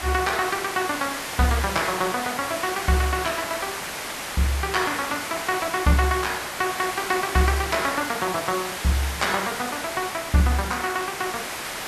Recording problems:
background hiss; SNR 5 dB

